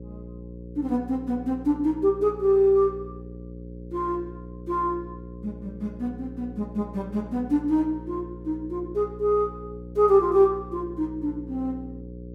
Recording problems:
electrical hum; 60 Hz, harmonics up to 540 Hz, SNR 15 dB

